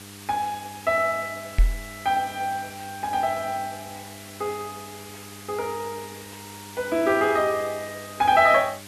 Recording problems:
hum; 50 Hz, harmonics up to 1.2 kHz, SNR 21 dB
background hiss; slope +1 dB per octave, SNR 17 dB
microphone bump; at 1.5 s; peak +7 dB vs average level

